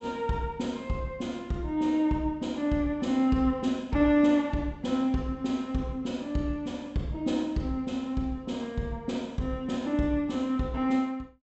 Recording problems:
treble cut off; nothing above 8 kHz

